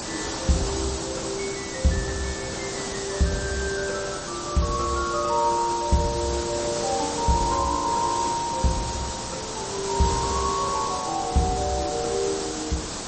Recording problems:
lossy codec; MP3, log-spectral distance 17 dB, nothing above 8.2 kHz
background hiss; SNR 4 dB

